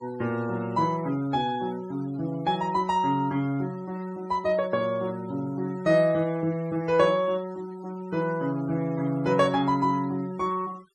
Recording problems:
noise reduction artefacts; signal-to-artefact ratio 23 dB

